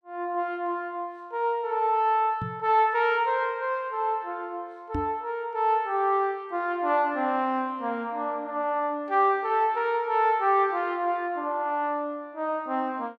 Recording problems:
microphone thump; at 2.5 s and at 5 s; peak -1 dB vs average level

